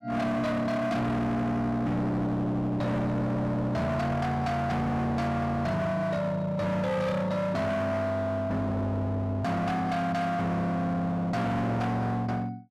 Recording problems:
distortion; hard clipping, uneven, signal-to-distortion ratio 6 dB

